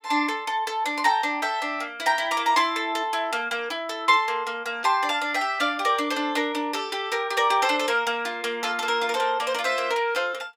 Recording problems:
none

